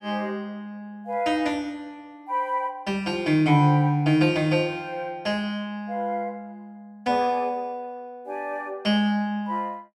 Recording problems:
none

